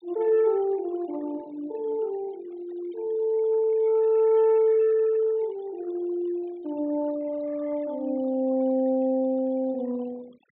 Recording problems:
treble missing; nothing above 4 kHz
noise reduction artefacts; signal-to-artefact ratio 26 dB

